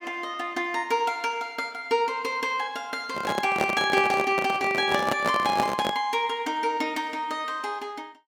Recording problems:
microphone handling noise; from 3 to 6 s; peak +3 dB vs average level

